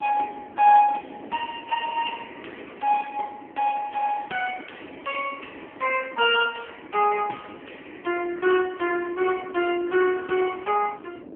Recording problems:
telephone audio; 240 Hz to 3.2 kHz, AMR-NB
wind on the microphone; below 480 Hz, SNR 18 dB

